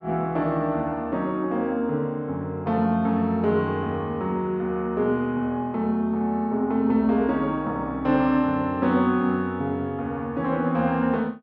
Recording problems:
none

